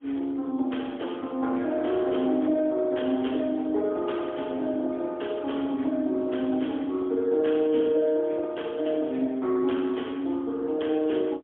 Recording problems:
phone line; 220 Hz to 3.4 kHz, AMR-NB, then MP3

